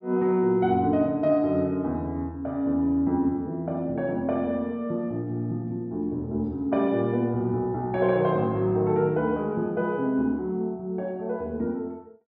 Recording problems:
none

